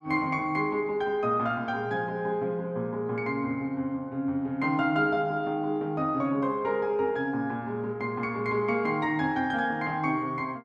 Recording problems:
none

